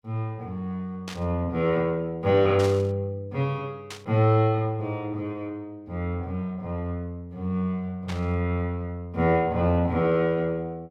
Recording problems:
burst of static; 4 times, first at 1 s; peak -6 dB vs average level

